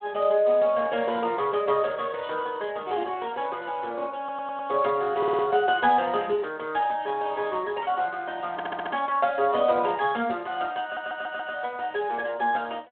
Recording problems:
telephone audio; 190 Hz to 3.5 kHz, Speex
audio stuttering; 4 times, first at 4 s

